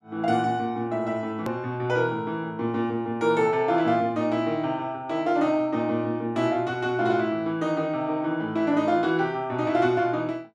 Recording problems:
edit click; at 1.5 s

